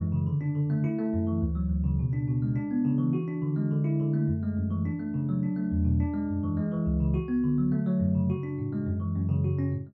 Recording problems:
none

